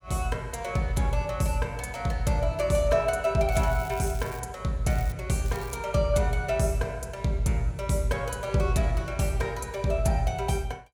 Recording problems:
crackle; at 3.5 s, at 5 s and at 5.5 s; loose cable, SNR 20 dB

